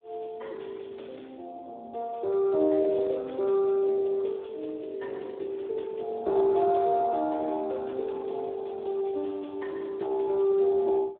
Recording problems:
phone line; 280 Hz to 3.8 kHz, Speex

